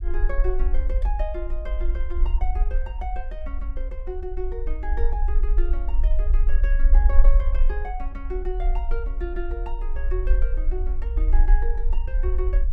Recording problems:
rumble; below 44 Hz, strongest tone 24 Hz, SNR -10 dB

